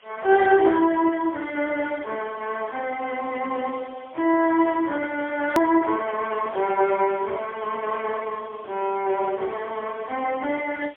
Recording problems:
telephone audio; 280 Hz to 3.5 kHz, AMR-NB, then MP3
background hiss; SNR 29 dB
edit click; at 5.5 s

